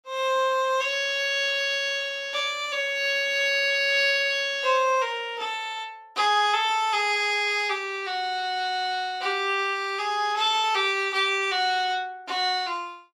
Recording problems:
none

